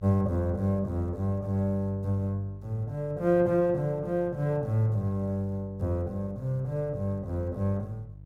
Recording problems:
hum; 50 Hz, harmonics up to 350 Hz, SNR 19 dB

